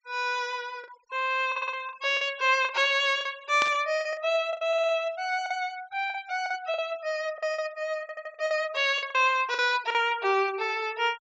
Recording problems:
treble missing; nothing above 8 kHz
noise reduction artefacts; signal-to-artefact ratio 23 dB
lost packets; 9% of the sound replaced, filled with the last packet
stutter; at 1.5 s, at 4.5 s and at 8 s
static burst; at 3.5 s; peak -1 dB vs average level

